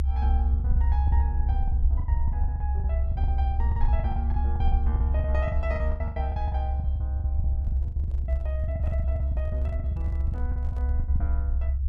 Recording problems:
low-frequency rumble; below 74 Hz, strongest tone 66 Hz, SNR -12 dB
packet loss; 19% of the sound replaced, filled with the last packet
microphone handling noise; from 7.5 to 11 s; peak -8 dB vs average level

